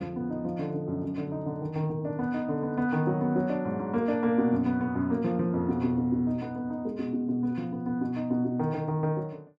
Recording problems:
none

